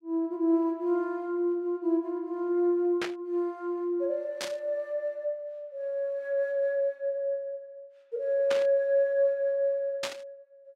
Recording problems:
static burst; 4 times, first at 3 s; peak 0 dB vs average level

